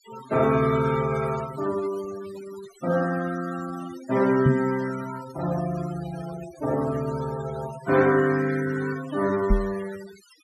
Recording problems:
denoising artefacts; signal-to-artefact ratio 15 dB
microphone bump; at 4.5 s and at 9.5 s; peak +8 dB vs average level

